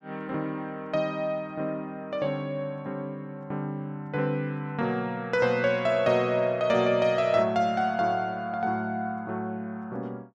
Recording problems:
none

